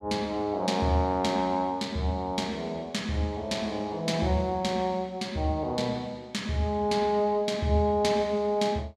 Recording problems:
none

